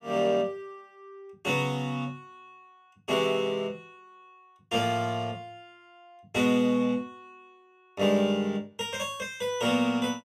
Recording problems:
none

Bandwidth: 14.5 kHz